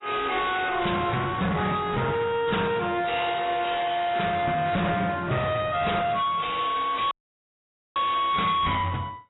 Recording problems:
lossy codec; AAC, then AAC, log-spectral distance 6 dB, nothing above 3.8 kHz
distorted audio; soft clipping, signal-to-distortion ratio 6 dB
audio cutting out; at 7 s for 1 s

